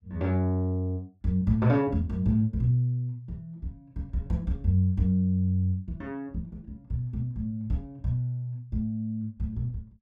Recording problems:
none

